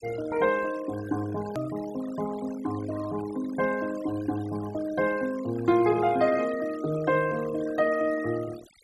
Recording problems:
noise reduction artefacts; signal-to-artefact ratio 17 dB
edit click; at 1.5 s

